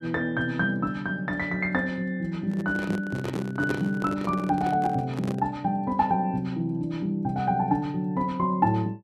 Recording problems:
handling noise; from 2.5 to 5.5 s; peak +1 dB vs average level

